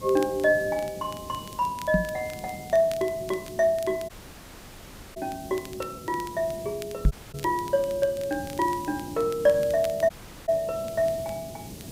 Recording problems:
hiss; SNR 15 dB
crackle; vinyl, SNR 21 dB
knock on the microphone; at 2 s and at 7 s; peak +8 dB vs average level
audio cutting out; at 4 s for 1 s, at 7 s and at 10 s

